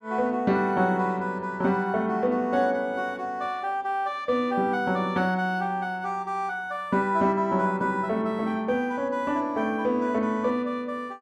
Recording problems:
none

